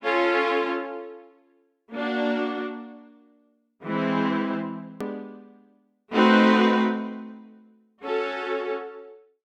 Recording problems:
edit click; at 5 s

